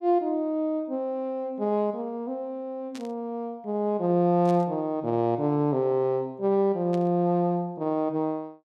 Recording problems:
static burst; at 3 s, at 4.5 s and at 7 s; peak -13 dB vs average level

